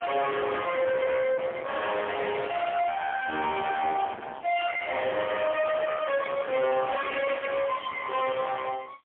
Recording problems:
phone line; 280 Hz to 2.8 kHz, AMR-NB, then MP3
distorted audio; soft clipping, signal-to-distortion ratio 5 dB

